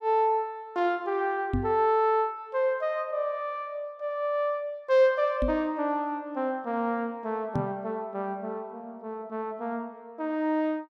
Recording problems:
microphone bump; at 1.5 s, at 5.5 s and at 7.5 s; peak +3 dB vs average level

